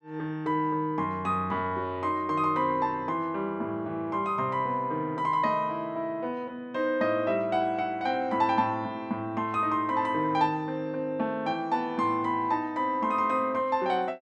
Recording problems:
none

